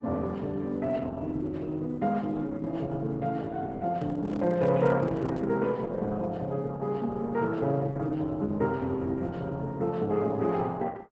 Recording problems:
lossy codec; Opus, log-spectral distance 3 dB, nothing above 7.6 kHz
microphone handling noise; from 4 to 5.5 s; peak -10 dB vs average level

